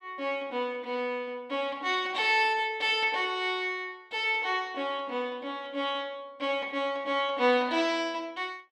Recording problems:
none

